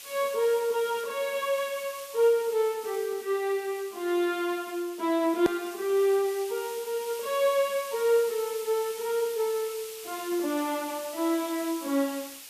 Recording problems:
hiss; SNR 14 dB
hard cut with a click; at 5.5 s

